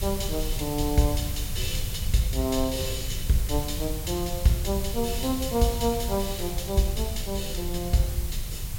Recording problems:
hiss; slope 0 dB per octave, SNR 9 dB
low-frequency rumble; below 94 Hz, SNR 6 dB

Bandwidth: 16.5 kHz